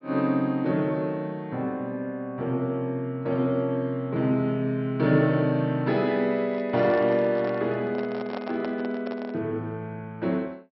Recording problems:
treble cut off; nothing above 5.5 kHz
microphone handling noise; from 6.5 to 9.5 s; peak -5 dB vs average level

